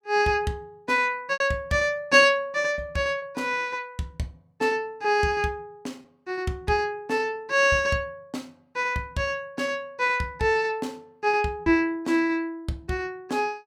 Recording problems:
packet loss; 1.8% of the sound replaced, filled with repeated pitch periods

